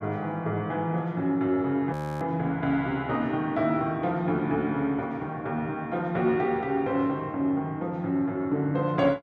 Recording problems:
frozen audio; at 2 s

